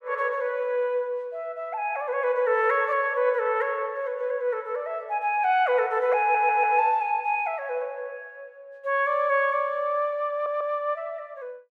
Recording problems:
audio stuttering; at 6 s and at 10 s

